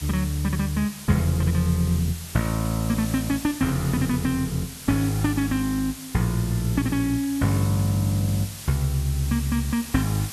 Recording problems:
background hiss; slope 0 dB per octave, SNR 13 dB

